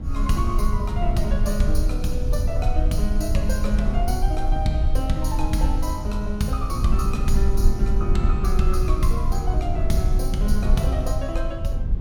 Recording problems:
rumble; below 58 Hz, SNR -2 dB

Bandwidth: 17.5 kHz